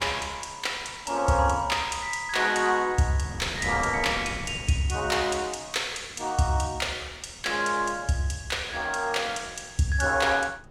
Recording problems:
wind on the microphone; below 470 Hz, SNR 19 dB

